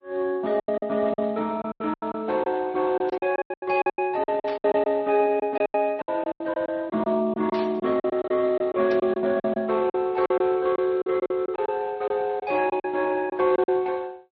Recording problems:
lossy compression; Speex, then MP3, log-spectral distance 3 dB
packet loss; 15% of the sound replaced, filled with silence
burst of static; 4 times, first at 3 s; peak -11 dB vs average level

